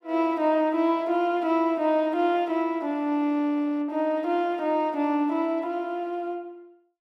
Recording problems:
none

